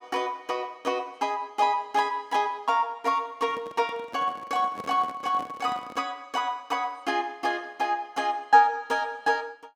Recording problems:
handling noise; from 3.5 to 6 s; peak -8 dB vs average level

